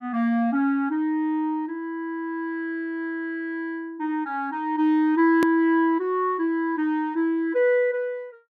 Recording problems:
hard cut with a click; at 5.5 s

